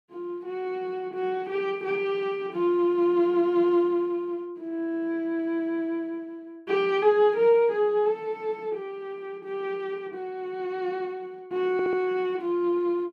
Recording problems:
stutter; at 12 s

